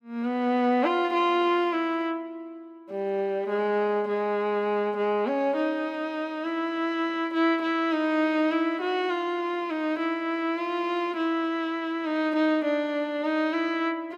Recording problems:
none

